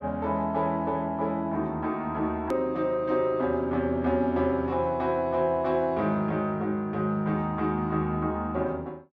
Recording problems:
click at an edit; at 2.5 s

